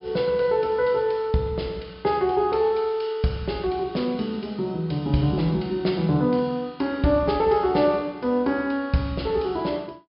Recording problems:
treble cut off; nothing above 5.5 kHz

